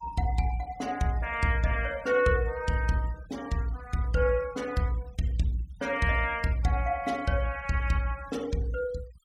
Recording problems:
noise reduction artefacts; signal-to-artefact ratio 22 dB

